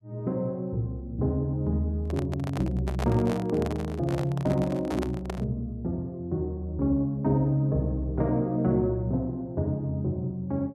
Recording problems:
handling noise; from 2 to 5.5 s; peak -1 dB vs average level

